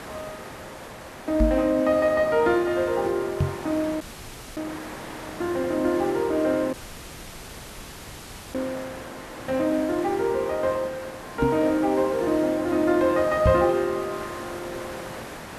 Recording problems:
background hiss; SNR 14 dB
knock on the microphone; 4 times, first at 1.5 s; peak +4 dB vs average level
dropout; at 4 s for 0.5 s and at 6.5 s for 2 s

